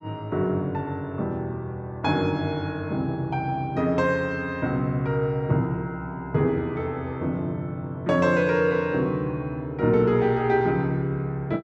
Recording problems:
none

